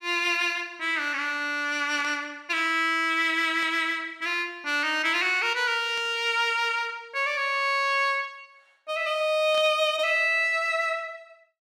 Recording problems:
burst of static; 4 times, first at 2 s; peak -13 dB vs average level

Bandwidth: 14.5 kHz